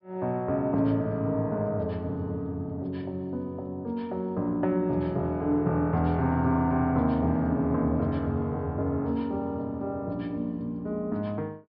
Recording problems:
treble missing; nothing above 5.1 kHz

